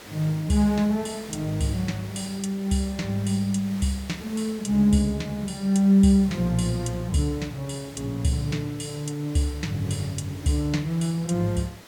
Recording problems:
background hiss; slope -3 dB per octave, SNR 19 dB

